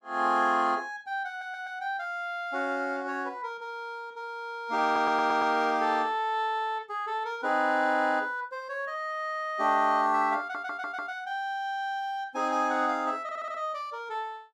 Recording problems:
audio stuttering; 4 times, first at 1.5 s

